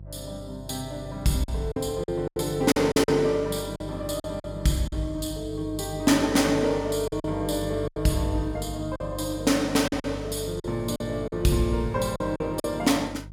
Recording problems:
mains hum; 50 Hz, harmonics up to 350 Hz, SNR 13 dB
packet loss; 8% of the sound replaced, filled with silence

